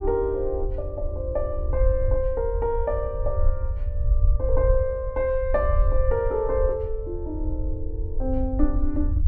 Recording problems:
rumble; below 66 Hz, SNR 1 dB

